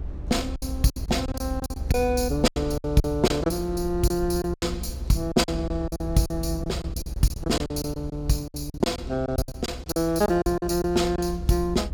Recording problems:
low-frequency rumble; below 74 Hz, SNR 9 dB
lost packets; 15% of the sound replaced, filled with silence

